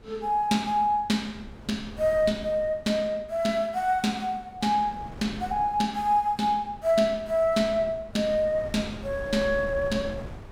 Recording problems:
wind on the microphone; below 360 Hz, SNR 18 dB

